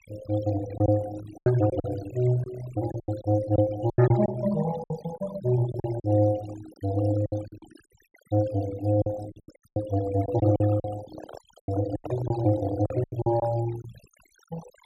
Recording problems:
noise reduction artefacts; signal-to-artefact ratio 16 dB
packet loss; 11% of the sound replaced, filled with silence
handling noise; from 11 to 13 s; peak -8 dB vs average level

